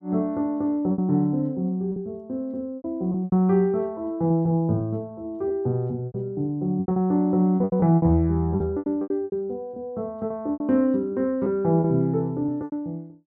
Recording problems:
lost packets; 10% of the sound replaced, filled with repeated pitch periods

